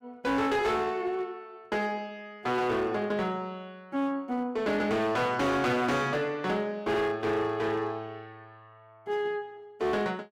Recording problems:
distorted audio; hard clipping, uneven, signal-to-distortion ratio 10 dB

